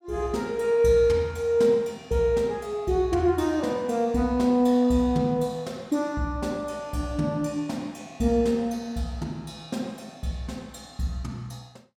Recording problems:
none

